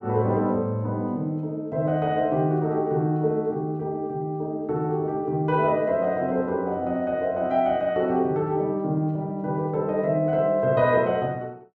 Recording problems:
none

